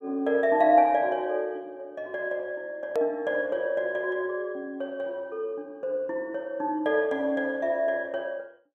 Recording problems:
click at an edit; at 3 s

